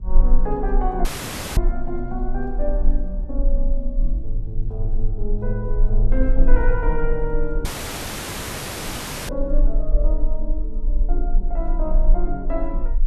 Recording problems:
electrical hum; 60 Hz, harmonics up to 420 Hz, SNR 17 dB
rumble; below 34 Hz, strongest tone 22 Hz, SNR -4 dB
audio cutting out; at 1 s for 0.5 s and at 7.5 s for 1.5 s

